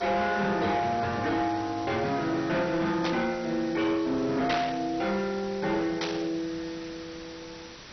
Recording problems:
lossy codec; MP2, log-spectral distance 10 dB, nothing above 6 kHz
distorted audio; hard clipping, signal-to-distortion ratio 12 dB
background hiss; slope -1 dB per octave, SNR 16 dB
burst of static; at 3 s, at 4.5 s and at 6 s; peak +2 dB vs average level

